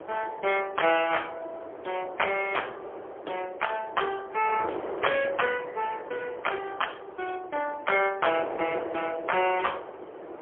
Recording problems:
telephone audio; 300 Hz to 3.3 kHz, AMR-NB, then MP3
wind noise; below 810 Hz, SNR 11 dB

